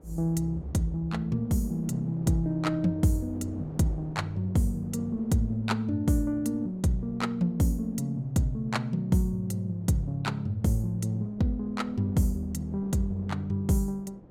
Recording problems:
wind noise; below 420 Hz, SNR 19 dB

